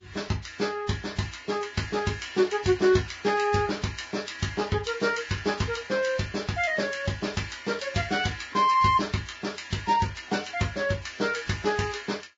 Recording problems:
codec artefacts; Vorbis, log-spectral distance 5 dB, nothing above 7.3 kHz

